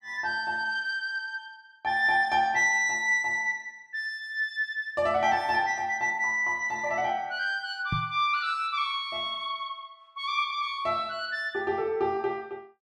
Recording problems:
knock on the microphone; at 8 s; peak 0 dB vs average level

